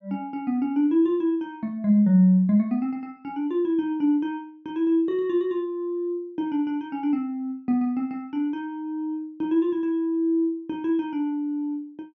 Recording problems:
low-pass filter; nothing above 8 kHz

